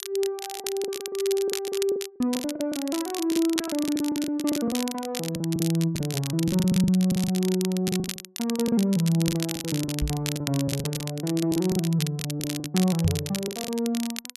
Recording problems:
crackle; vinyl, SNR 8 dB
packet loss; 15% of the sound replaced, filled with the last packet
knock on the microphone; at 10 s and at 13 s; peak +4 dB vs average level

